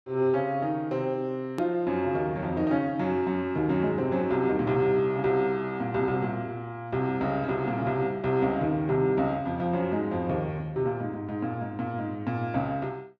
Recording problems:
click at an edit; at 1.5 s

